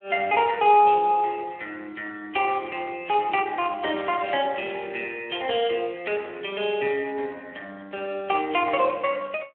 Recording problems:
phone line; 320 Hz to 3.2 kHz, Speex

